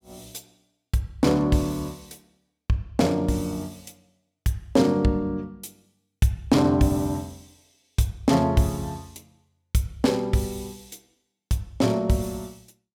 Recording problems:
none

